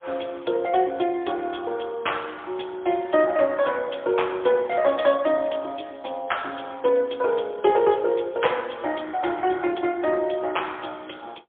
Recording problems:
telephone audio; 300 Hz to 3.5 kHz, AMR-NB, then MP3

